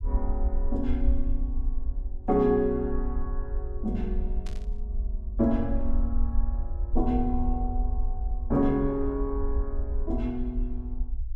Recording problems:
low-frequency rumble; below 52 Hz, strongest tone 22 Hz, SNR 3 dB
static burst; at 4.5 s; peak -13 dB vs average level

